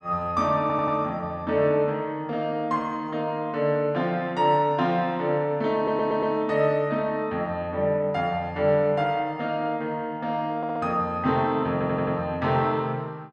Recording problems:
audio stuttering; 4 times, first at 0.5 s

